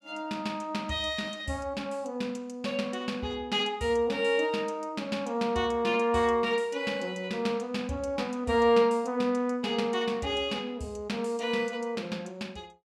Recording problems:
none

